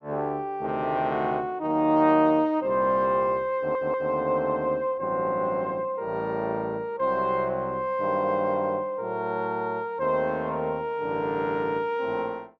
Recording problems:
stutter; at 3.5 s

